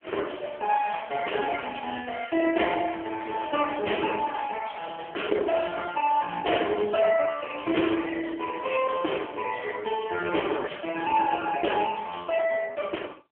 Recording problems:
telephone audio; 280 Hz to 3.2 kHz, AMR-NB

